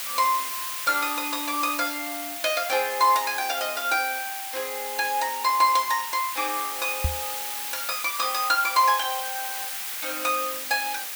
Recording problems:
background hiss; SNR 5 dB
microphone thump; at 7 s; peak +3 dB vs average level

